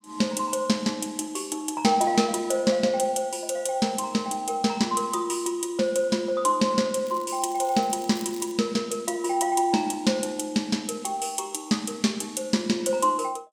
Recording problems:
crackling; from 7 to 8.5 s; loose cable, SNR 21 dB

